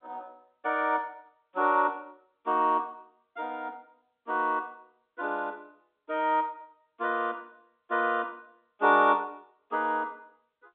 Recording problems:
phone line; 260 Hz to 3.7 kHz, G.711

